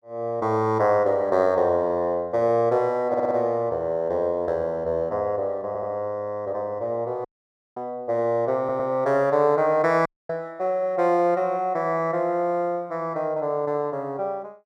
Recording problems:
audio stuttering; at 3 s, at 5.5 s and at 8.5 s
audio cutting out; at 7.5 s for 0.5 s and at 10 s

